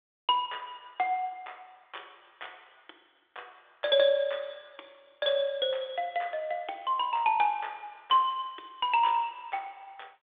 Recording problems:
telephone audio; 280 Hz to 3.6 kHz, G.726

